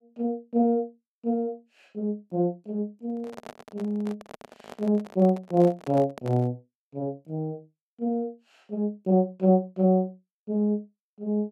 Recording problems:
handling noise; from 3 to 6.5 s; peak -9 dB vs average level

